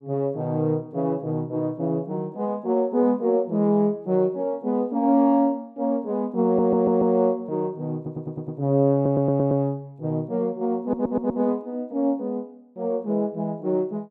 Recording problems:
stutter; 4 times, first at 6.5 s

